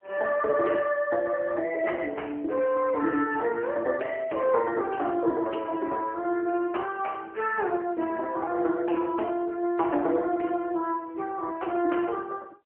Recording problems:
telephone audio; 260 Hz to 3 kHz, AMR-NB

